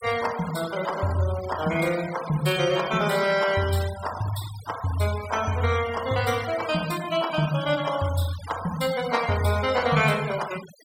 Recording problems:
denoising artefacts; signal-to-artefact ratio 14 dB

